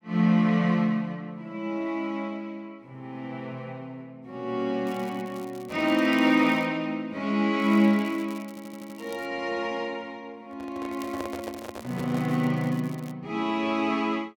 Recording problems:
crackling; from 5 to 6.5 s, from 7.5 to 9.5 s and from 11 to 13 s; loose cable, SNR 24 dB
audio stuttering; at 8.5 s
microphone handling noise; from 10 to 12 s; peak -5 dB vs average level

